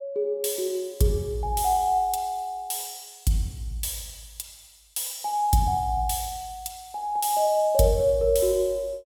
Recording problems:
none

